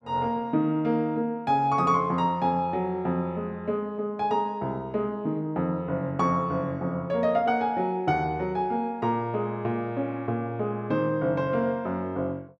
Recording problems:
none

